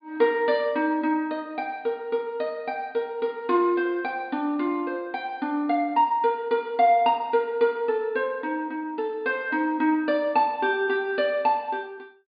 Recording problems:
low-pass filter; nothing above 4.8 kHz

